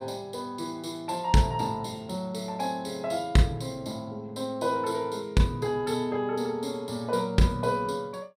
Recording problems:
none

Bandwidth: 15.5 kHz